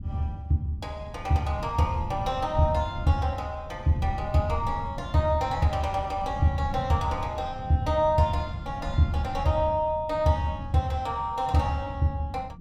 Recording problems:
rumble; below 150 Hz, SNR 12 dB

